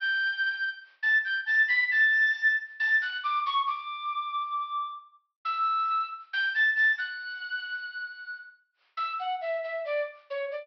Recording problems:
low-pass filter; nothing above 5.5 kHz

